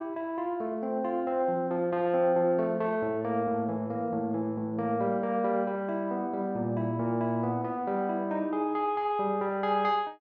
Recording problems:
none

